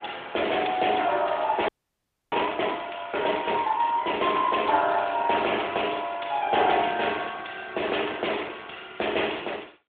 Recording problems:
telephone audio; 260 Hz to 3.6 kHz, AMR-NB
audio freezing; at 1.5 s for 0.5 s

